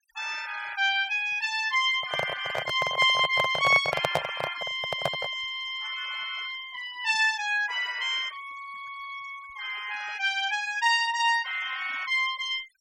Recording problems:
denoising artefacts; signal-to-artefact ratio 20 dB
handling noise; from 2 to 5.5 s; peak +4 dB vs average level

